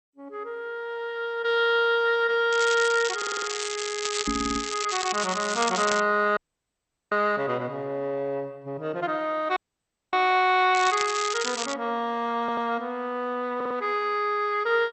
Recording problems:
lossy codec; MP2, log-spectral distance 6 dB
crackling; from 2.5 to 6 s and at 11 s; loose cable, SNR 6 dB
audio stuttering; 4 times, first at 3 s
microphone thump; at 4.5 s; peak 0 dB vs average level
dropout; at 6.5 s for 1 s and at 9.5 s for 0.5 s

